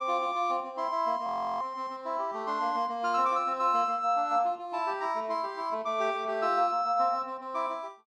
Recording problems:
audio freezing; at 1.5 s

